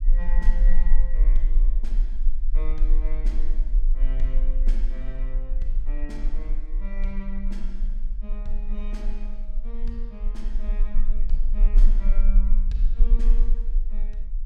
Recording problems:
rumble; below 34 Hz, strongest tone 18 Hz, SNR -14 dB

